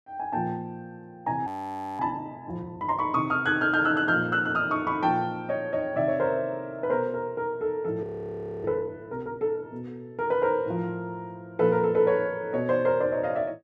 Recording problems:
frozen audio; at 1.5 s for 0.5 s and at 8 s for 0.5 s

